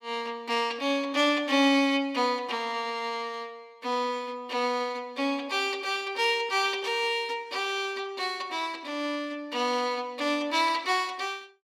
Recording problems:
none

